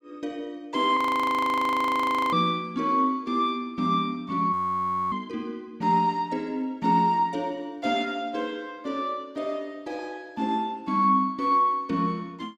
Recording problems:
frozen audio; at 1 s for 1.5 s and at 4.5 s for 0.5 s

